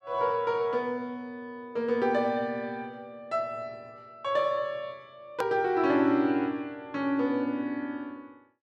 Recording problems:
hard cut with a click; at 5.5 s

